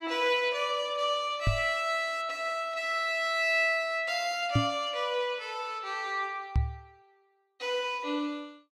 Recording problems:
microphone thump; at 1.5 s, at 4.5 s and at 6.5 s; peak +7 dB vs average level

